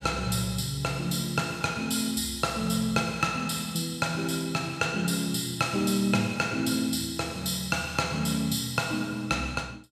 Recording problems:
none

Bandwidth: 14.5 kHz